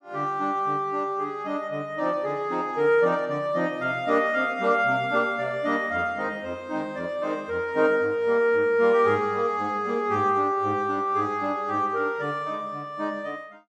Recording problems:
none

